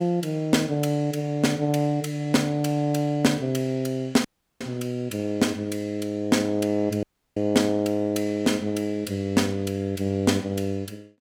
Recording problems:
audio cutting out; at 4.5 s and at 7 s

